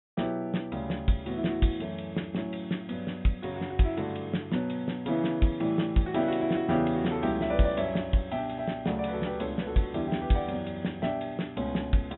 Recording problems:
low-pass filter; nothing above 3.8 kHz

